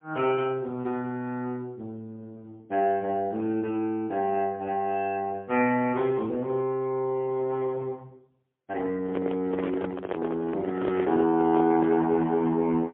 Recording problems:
telephone audio; 110 Hz to 2.9 kHz, AMR-NB, then MP3
microphone handling noise; from 9 to 12 s; peak +1 dB vs average level

